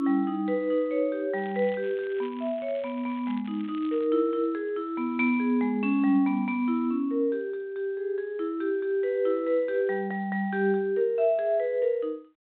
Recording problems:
phone line; 220 Hz to 3.8 kHz, G.726
crackle; from 1.5 to 4 s; loose cable, SNR 24 dB

